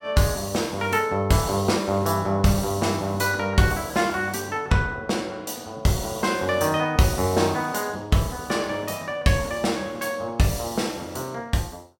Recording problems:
none

